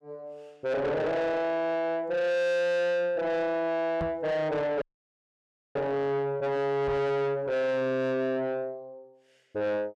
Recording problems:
distortion; soft clipping, signal-to-distortion ratio 8 dB
microphone bump; at 4 s and at 7 s; peak 0 dB vs average level
frozen audio; at 5 s for 1 s

